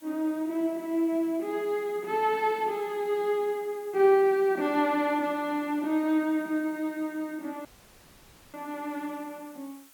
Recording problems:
background hiss; slope 0 dB per octave, SNR 26 dB
audio cutting out; at 7.5 s for 1 s

